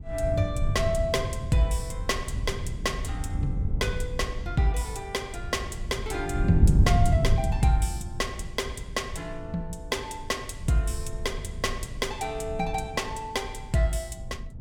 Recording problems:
low-frequency rumble; below 90 Hz, SNR 10 dB
wind noise; below 130 Hz, SNR -1 dB

